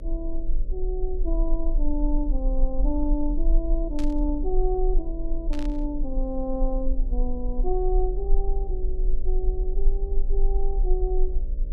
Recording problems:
hum; 60 Hz, harmonics up to 600 Hz, SNR 13 dB
low-frequency rumble; below 36 Hz, strongest tone 18 Hz, SNR -2 dB
burst of static; at 4 s and at 5.5 s; peak -6 dB vs average level

